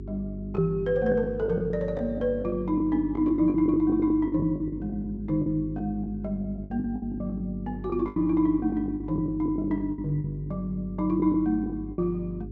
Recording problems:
treble cut off; nothing above 8 kHz
hum; 50 Hz, harmonics up to 400 Hz, SNR 12 dB
lost packets; 13% of the sound replaced, filled with the last packet

